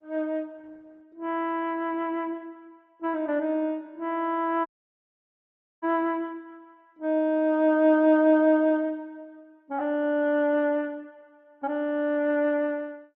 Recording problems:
codec artefacts; Opus, log-spectral distance 2 dB
dropout; at 4.5 s for 1 s

